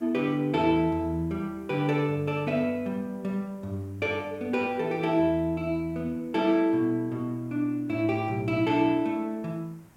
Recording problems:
background hiss; SNR 29 dB

